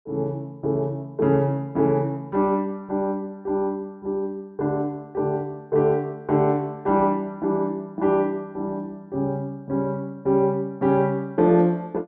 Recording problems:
none

